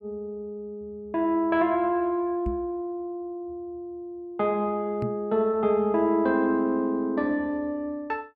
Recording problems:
knock on the microphone; at 2.5 s and at 5 s; peak -1 dB vs average level

